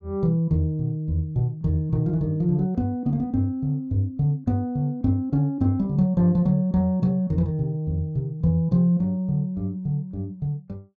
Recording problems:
none

